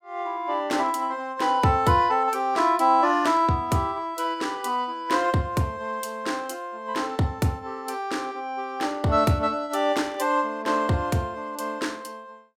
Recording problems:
none

